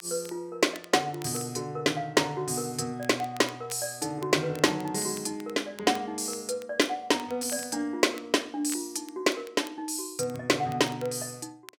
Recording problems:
crackling; vinyl, SNR 21 dB

